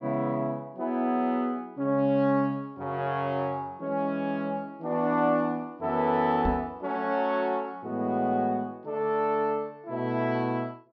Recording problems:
treble missing; nothing above 6.1 kHz
microphone bump; at 6.5 s; peak +2 dB vs average level

